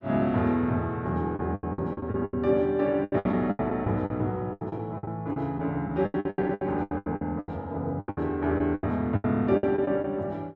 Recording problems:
lost packets; 18% of the sound replaced, filled with the last packet

